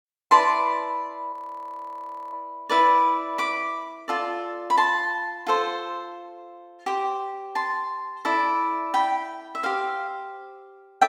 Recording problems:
frozen audio; at 1.5 s for 1 s

